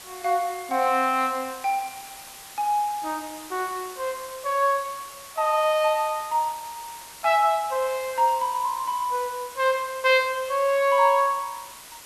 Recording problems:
background hiss; slope 0 dB per octave, SNR 16 dB

